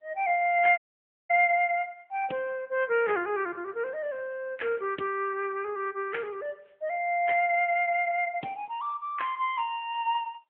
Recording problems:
telephone audio; 240 Hz to 3.5 kHz, AMR-NB
dropout; at 1 s for 0.5 s

